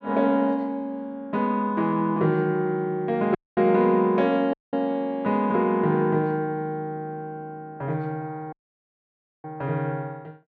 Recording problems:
audio cutting out; at 3.5 s, at 4.5 s and at 8.5 s for 1 s

